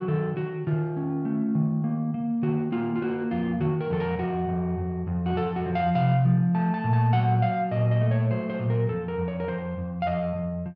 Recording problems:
none

